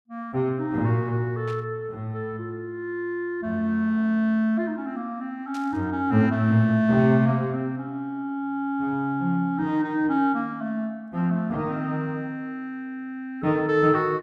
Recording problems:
static burst; at 1.5 s and at 5.5 s; peak -14 dB vs average level

